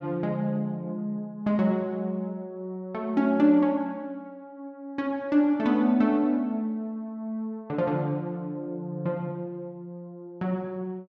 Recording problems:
none

